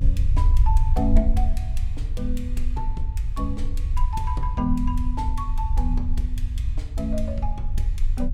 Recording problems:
low-frequency rumble; below 62 Hz, strongest tone 22 Hz, SNR -5 dB

